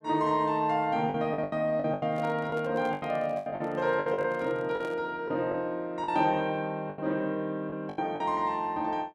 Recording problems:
lost packets; 11% of the sound replaced, filled with the last packet
microphone handling noise; from 2 to 5 s; peak -9 dB vs average level

